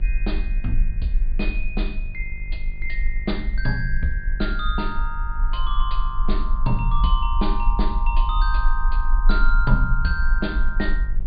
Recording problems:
treble missing; nothing above 4.8 kHz
mains hum; 50 Hz, harmonics up to 550 Hz, SNR 12 dB
low-frequency rumble; below 40 Hz, strongest tone 22 Hz, SNR -2 dB

